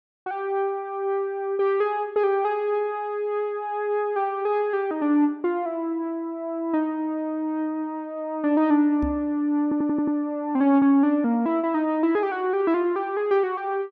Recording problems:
microphone bump; at 9 s; peak -2 dB vs average level
audio stuttering; at 9.5 s

